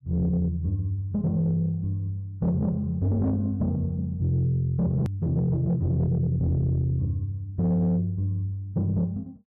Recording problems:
distortion; soft clipping, signal-to-distortion ratio 11 dB
hard cut with a click; at 5 s

